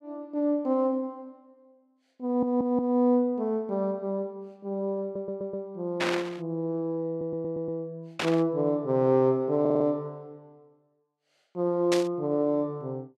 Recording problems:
audio stuttering; 4 times, first at 2.5 s
burst of static; at 6 s, at 8 s and at 12 s; peak +2 dB vs average level

